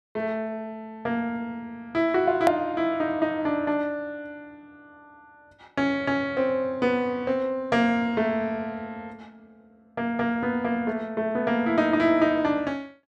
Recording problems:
click at an edit; at 2.5 s

